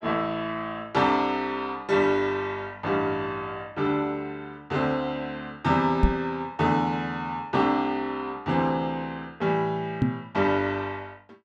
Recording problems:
microphone bump; at 6 s and at 10 s; peak +9 dB vs average level

